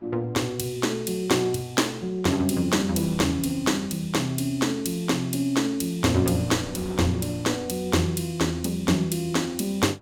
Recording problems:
wind noise; below 770 Hz, SNR 24 dB

